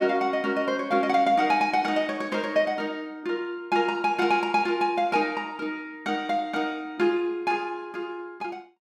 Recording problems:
none

